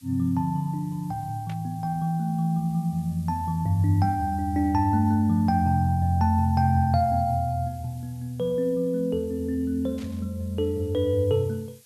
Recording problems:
background hiss; slope +2 dB per octave, SNR 28 dB
static burst; at 1.5 s and at 10 s; peak -15 dB vs average level

